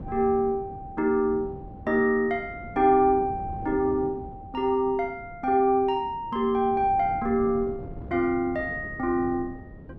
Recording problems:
wind noise; below 290 Hz, SNR 16 dB

